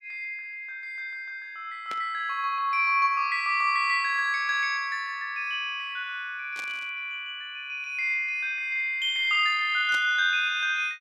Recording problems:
static burst; at 2 s, at 6.5 s and at 10 s; peak -9 dB vs average level

